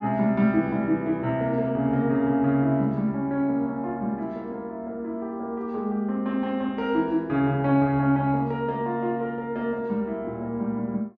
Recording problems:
treble missing; nothing above 7.6 kHz

